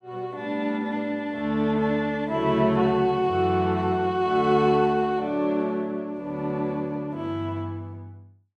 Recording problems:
none

